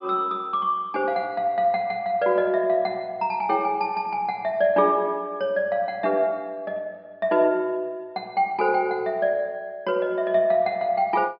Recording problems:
low-pass filter; nothing above 5.5 kHz

